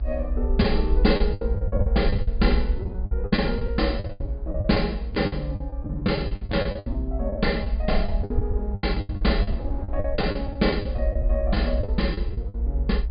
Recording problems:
low-pass filter; nothing above 4.9 kHz
rumble; below 60 Hz, SNR 1 dB
wind on the microphone; below 490 Hz, SNR 20 dB
packet loss; 16% of the sound replaced, filled with the last packet

